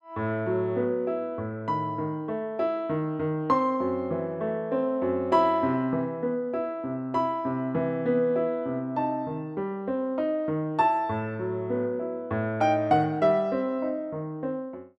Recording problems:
none

